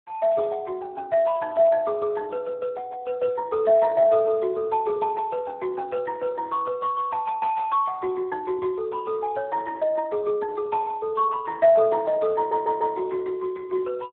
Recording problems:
telephone audio; 320 Hz to 2.5 kHz, Speex
audio stuttering; at 12 s

